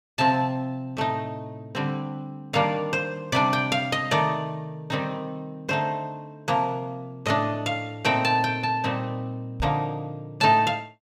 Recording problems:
knock on the microphone; at 9.5 s; peak -2 dB vs average level

